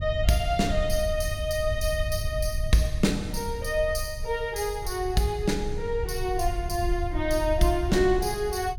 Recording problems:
rumble; below 76 Hz, SNR 6 dB

